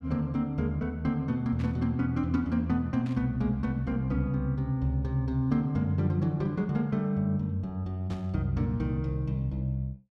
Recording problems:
static burst; at 1.5 s, at 3 s and at 8 s; peak -13 dB vs average level

